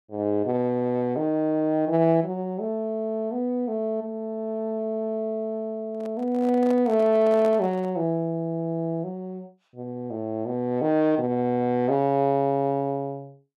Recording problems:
microphone handling noise; from 6 to 8 s; peak -8 dB vs average level

